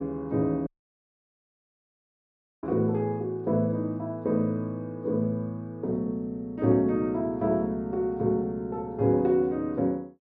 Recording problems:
dropout; at 0.5 s for 2 s

